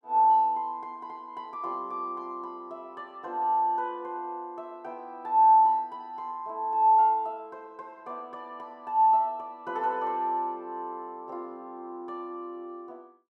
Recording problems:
none

